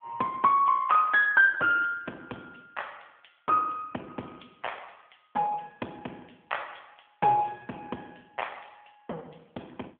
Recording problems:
telephone audio; 370 Hz to 3.3 kHz, AMR-NB

